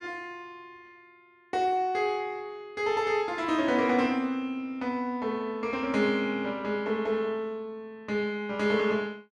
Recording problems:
none

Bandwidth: 12 kHz